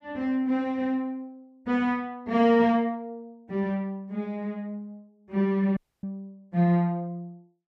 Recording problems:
dropout; at 6 s

